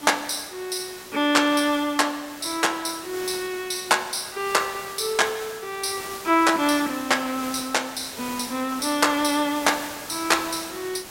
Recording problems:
hiss; slope -2 dB per octave, SNR 13 dB

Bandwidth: 16 kHz